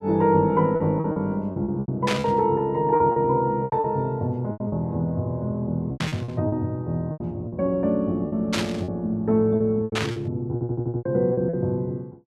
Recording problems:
packet loss; 12% of the sound replaced, filled with repeated pitch periods
burst of static; 4 times, first at 2 s; peak +2 dB vs average level
stutter; at 11 s

